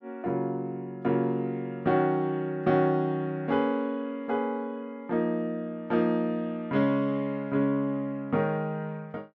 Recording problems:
none

